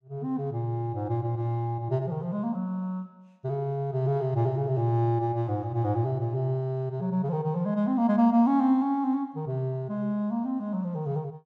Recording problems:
none

